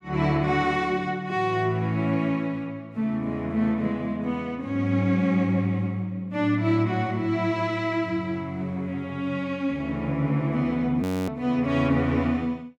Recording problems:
frozen audio; at 11 s

